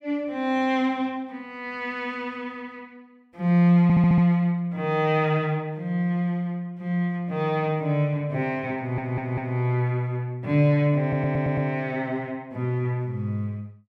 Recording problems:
audio stuttering; at 4 s, at 9 s and at 11 s

